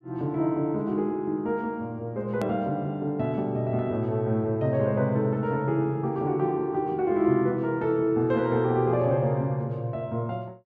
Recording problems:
click at an edit; at 2.5 s

